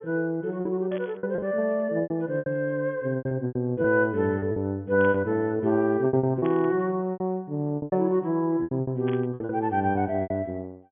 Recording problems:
treble missing; nothing above 3.4 kHz
packet loss; 14% of the sound replaced, filled with repeated pitch periods
burst of static; 4 times, first at 1 s; peak -11 dB vs average level

